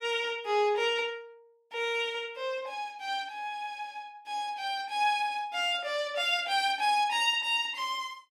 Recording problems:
none

